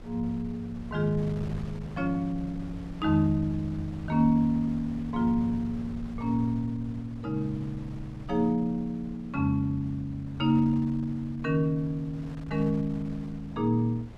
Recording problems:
wind noise; below 190 Hz, SNR 16 dB

